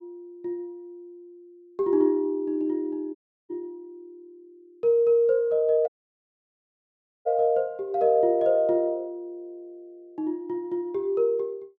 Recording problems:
dropout; at 3 s and at 6 s for 1.5 s

